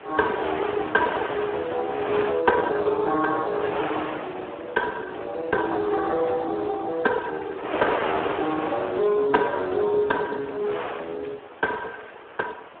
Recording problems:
phone line; 280 Hz to 2 kHz, Speex
wind on the microphone; below 1.6 kHz, SNR 7 dB

